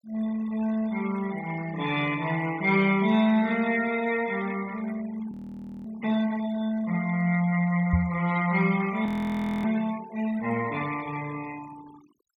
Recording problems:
noise reduction artefacts; signal-to-artefact ratio 18 dB
frozen audio; at 5.5 s for 0.5 s and at 9 s for 0.5 s
microphone bump; at 8 s; peak +5 dB vs average level

